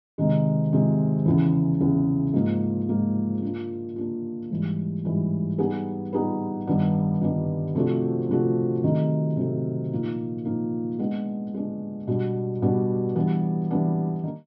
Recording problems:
low-pass filter; nothing above 5.5 kHz

